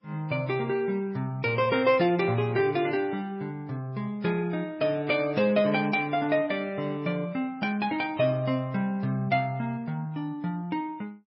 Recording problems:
lossy codec; MP3, log-spectral distance 2 dB, nothing above 5 kHz

